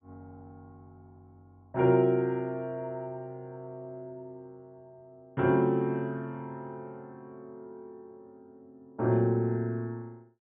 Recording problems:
low-pass filter; nothing above 3.8 kHz

